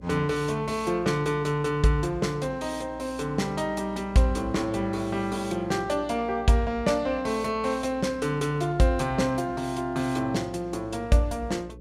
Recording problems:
hum; 60 Hz, harmonics up to 540 Hz, SNR 20 dB

